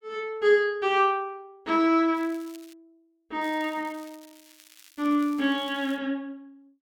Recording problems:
crackle; at 2 s and from 3.5 to 6 s; loose cable, SNR 26 dB

